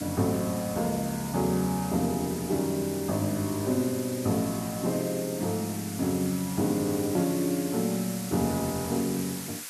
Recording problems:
background hiss; slope +2 dB per octave, SNR 10 dB

